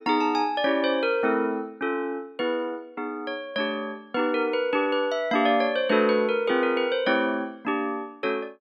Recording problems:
none

